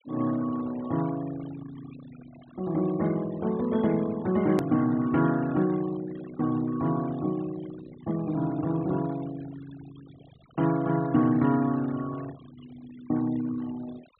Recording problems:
treble missing; nothing above 4 kHz
noise reduction artefacts; signal-to-artefact ratio 20 dB
edit click; at 4.5 s

